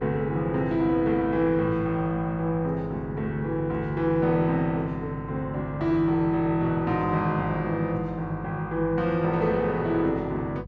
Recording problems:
hum; 50 Hz, harmonics up to 400 Hz, SNR 16 dB

